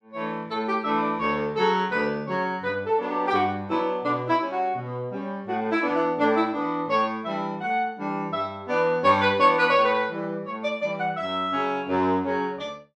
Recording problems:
none

